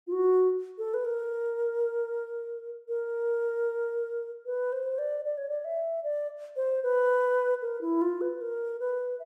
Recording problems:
none

